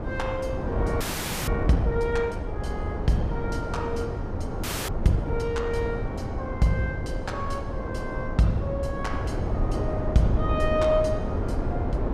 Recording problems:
wind noise; below 350 Hz, SNR 2 dB
frozen audio; at 1 s and at 4.5 s

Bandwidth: 14.5 kHz